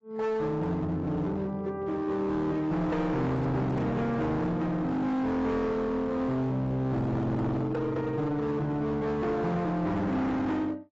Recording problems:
lossy codec; AAC, log-spectral distance 2 dB, nothing above 7.6 kHz
distortion; hard clipping, signal-to-distortion ratio 7 dB

